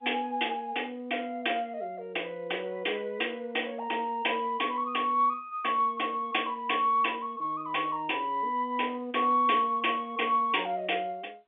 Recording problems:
telephone audio; 240 Hz to 3.4 kHz, G.711

